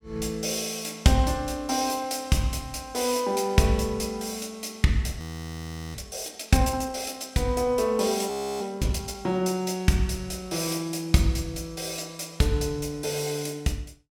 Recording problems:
frozen audio; at 5 s for 0.5 s and at 8.5 s

